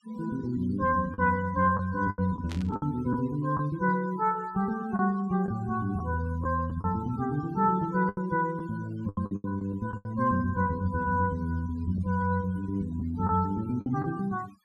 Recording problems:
denoising artefacts; signal-to-artefact ratio 22 dB
packet loss; 6% of the sound replaced, filled with the last packet
burst of static; at 2.5 s; peak -9 dB vs average level

